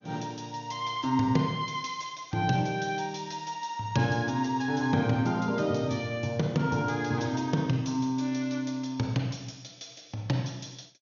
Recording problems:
lossy compression; MP2, log-spectral distance 4 dB, nothing above 6.7 kHz

